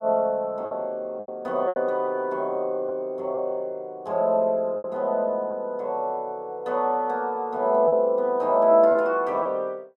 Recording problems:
lost packets; 4% of the sound replaced, filled with repeated pitch periods

